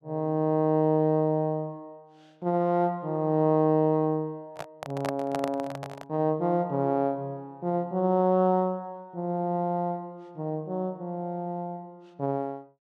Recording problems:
handling noise; from 4.5 to 6 s; peak -2 dB vs average level

